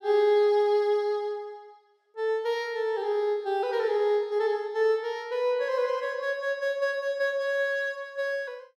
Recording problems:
none

